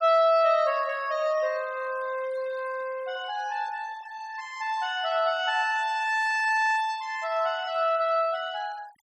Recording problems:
noise reduction artefacts; signal-to-artefact ratio 23 dB

